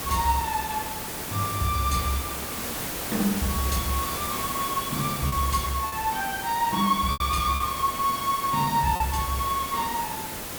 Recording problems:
hiss; slope -3 dB per octave, SNR 5 dB
lost packets; 2% of the sound replaced, filled with repeated pitch periods

